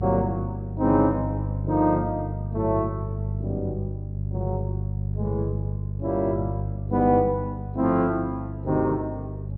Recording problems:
hum; 50 Hz, harmonics up to 400 Hz, SNR 5 dB

